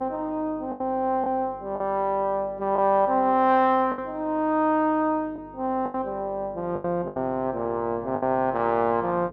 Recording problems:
hum; 50 Hz, harmonics up to 450 Hz, SNR 23 dB
lost packets; 6% of the sound replaced, filled with the last packet

